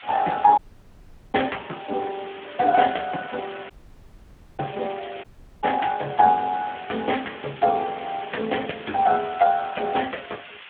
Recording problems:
telephone audio; 280 Hz to 3.4 kHz, Speex
background hiss; SNR 16 dB
audio cutting out; at 0.5 s for 1 s, at 3.5 s for 1 s and at 5 s

